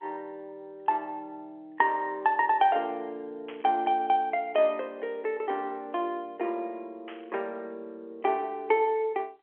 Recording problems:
phone line; 320 Hz to 3.5 kHz, G.711
burst of static; at 3.5 s and at 7 s; peak -12 dB vs average level

